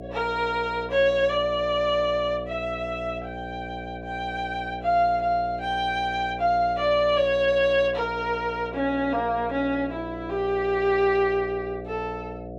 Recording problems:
hum; 60 Hz, harmonics up to 720 Hz, SNR 13 dB

